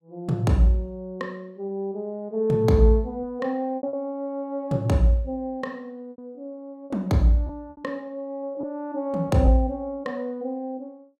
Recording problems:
lost packets; 4% of the sound replaced, filled with repeated pitch periods

